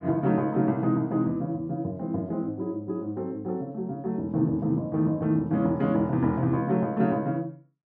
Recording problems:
none

